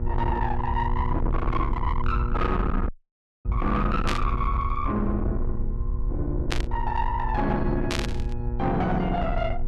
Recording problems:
distorted audio; soft clipping, signal-to-distortion ratio 6 dB
hum; 60 Hz, harmonics up to 960 Hz, SNR 10 dB
low-frequency rumble; below 80 Hz, SNR 2 dB
dropout; at 3 s for 0.5 s
burst of static; at 4 s, at 6.5 s and at 8 s; peak +3 dB vs average level

